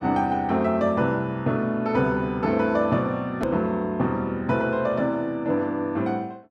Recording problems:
edit click; at 3.5 s

